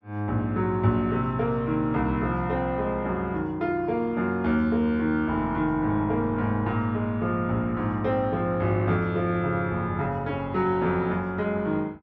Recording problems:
none

